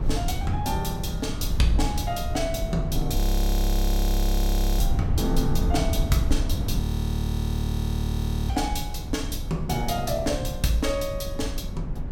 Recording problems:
rumble; below 110 Hz, SNR 0 dB
frozen audio; at 3 s for 1.5 s and at 7 s for 1.5 s

